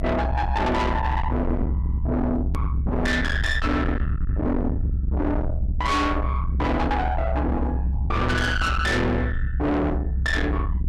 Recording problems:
distortion; soft clipping, signal-to-distortion ratio 6 dB
low-frequency rumble; below 250 Hz, strongest tone 64 Hz, SNR 2 dB
hard cut with a click; at 2.5 s

